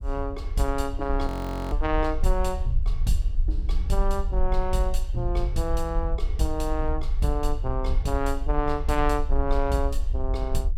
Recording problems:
low-frequency rumble; below 50 Hz, SNR 0 dB
audio freezing; at 1.5 s

